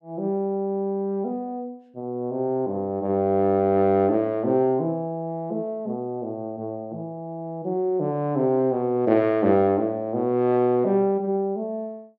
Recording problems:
none

